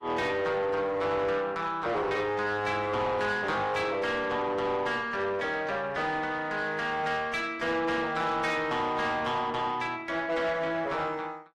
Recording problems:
codec artefacts; AAC, log-spectral distance 2 dB, nothing above 14.1 kHz
distorted audio; soft clipping, signal-to-distortion ratio 10 dB

